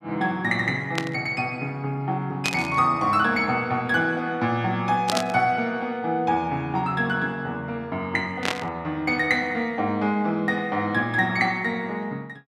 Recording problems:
static burst; 4 times, first at 1 s; peak +4 dB vs average level

